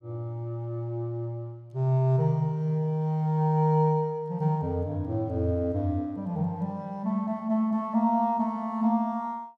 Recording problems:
none

